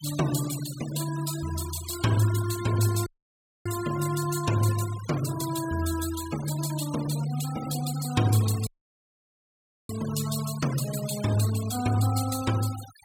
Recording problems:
denoising artefacts; signal-to-artefact ratio 12 dB
dropout; at 3 s for 0.5 s and at 8.5 s for 1 s

